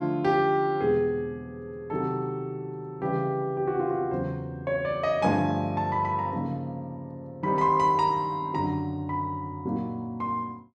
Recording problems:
none

